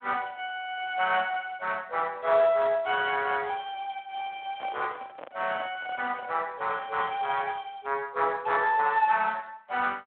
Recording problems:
phone line; 280 Hz to 3.5 kHz, Speex
microphone handling noise; from 4.5 to 6.5 s; peak -8 dB vs average level

